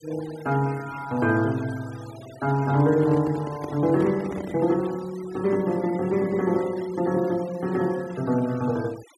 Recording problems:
denoising artefacts; signal-to-artefact ratio 21 dB
handling noise; from 2.5 to 5 s; peak -5 dB vs average level

